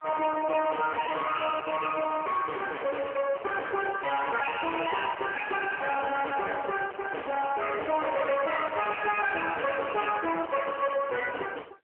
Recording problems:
telephone audio; 340 Hz to 3.1 kHz, AMR-NB
distorted audio; soft clipping, signal-to-distortion ratio 6 dB

